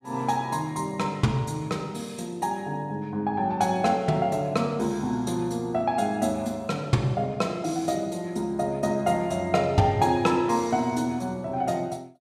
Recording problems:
none

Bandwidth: 14.5 kHz